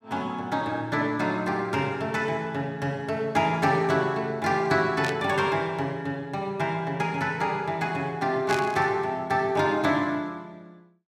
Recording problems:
static burst; at 5 s and at 8.5 s; peak -3 dB vs average level

